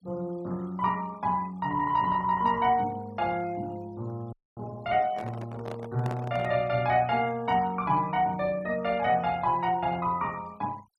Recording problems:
noise reduction artefacts; signal-to-artefact ratio 25 dB
audio freezing; at 4.5 s
microphone handling noise; from 5 to 6.5 s; peak -7 dB vs average level

